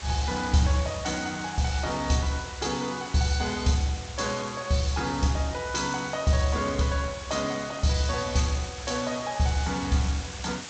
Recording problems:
lossy codec; G.722, log-spectral distance 13 dB
hiss; slope -1 dB per octave, SNR 12 dB

